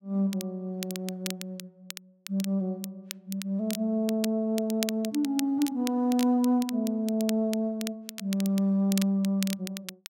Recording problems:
crackling; vinyl, SNR 12 dB

